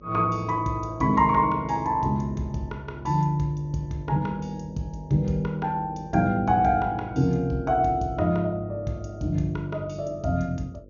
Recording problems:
low-pass filter; nothing above 6.7 kHz
mains hum; 50 Hz, harmonics up to 600 Hz, SNR 23 dB

